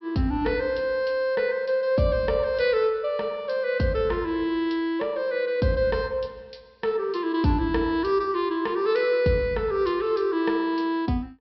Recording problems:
low-pass filter; nothing above 5.6 kHz

